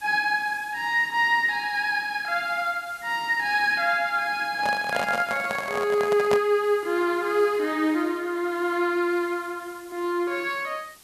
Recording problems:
background hiss; slope 0 dB per octave, SNR 25 dB
microphone handling noise; from 4.5 to 6.5 s; peak +1 dB vs average level

